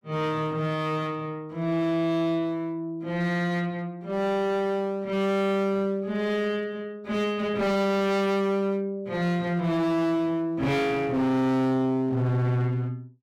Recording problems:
distortion; hard clipping, uneven, signal-to-distortion ratio 6 dB

